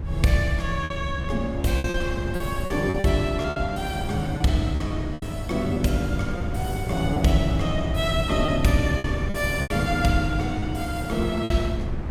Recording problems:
low-frequency rumble; below 88 Hz, SNR 9 dB
wind on the microphone; below 320 Hz, SNR 8 dB
lost packets; 8% of the sound replaced, filled with repeated pitch periods

